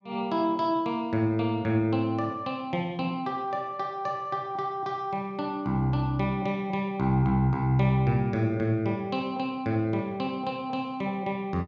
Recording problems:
none

